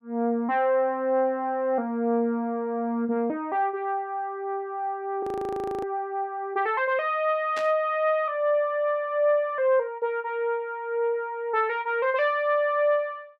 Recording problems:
frozen audio; at 5 s for 0.5 s
static burst; at 7.5 s; peak -7 dB vs average level

